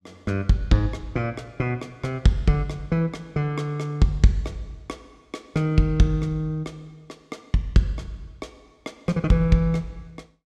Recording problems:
none

